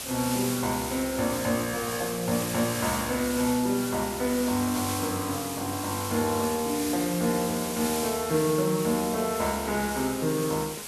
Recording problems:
hiss; slope -1 dB per octave, SNR 6 dB

